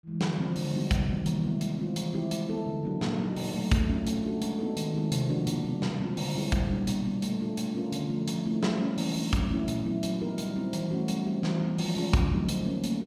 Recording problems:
none

